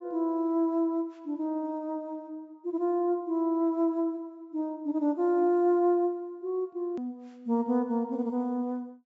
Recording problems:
treble missing; nothing above 8 kHz
hard cut with a click; at 7 s

